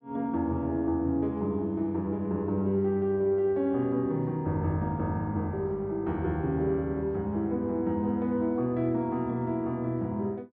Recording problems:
none

